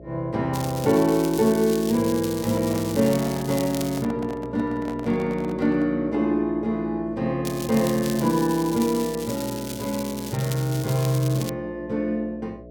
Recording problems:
hum; 60 Hz, harmonics up to 660 Hz, SNR 18 dB
crackling; from 0.5 to 4 s and from 7.5 to 11 s; loose cable, SNR 12 dB
microphone handling noise; from 2.5 to 6 s; peak -10 dB vs average level

